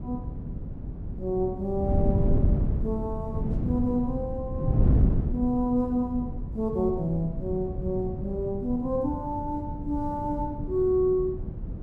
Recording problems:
wind noise; below 160 Hz, SNR 2 dB

